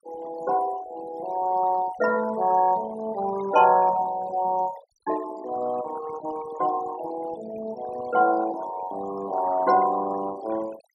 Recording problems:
noise reduction artefacts; signal-to-artefact ratio 16 dB

